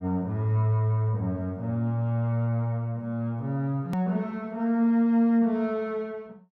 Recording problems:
edit click; at 4 s

